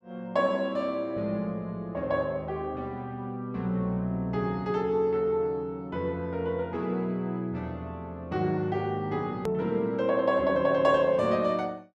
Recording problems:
click at an edit; at 9.5 s

